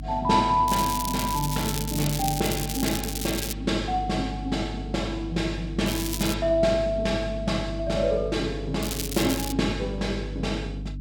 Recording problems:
electrical hum; 50 Hz, harmonics up to 300 Hz, SNR 9 dB
crackling; from 0.5 to 3.5 s, at 6 s and at 9 s; loose cable, SNR 6 dB

